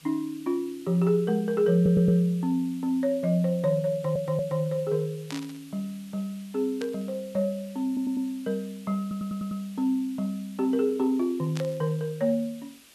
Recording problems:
hiss; SNR 24 dB
stutter; 4 times, first at 2 s
burst of static; at 5.5 s, at 7 s and at 12 s; peak -7 dB vs average level

